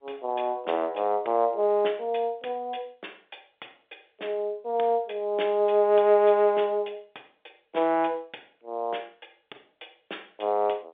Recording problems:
telephone audio; 340 Hz to 3.6 kHz, G.711

